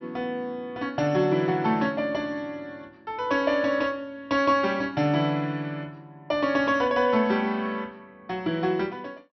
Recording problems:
treble cut off; nothing above 5.7 kHz

